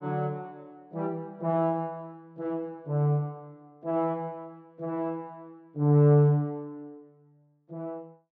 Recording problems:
none

